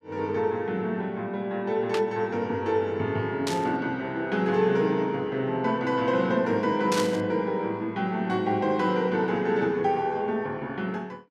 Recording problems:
burst of static; at 2 s, at 3.5 s and at 7 s; peak 0 dB vs average level

